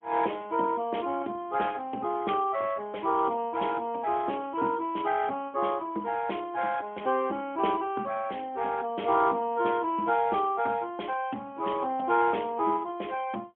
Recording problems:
telephone audio; 220 Hz to 3.3 kHz, AMR-NB, then MP3

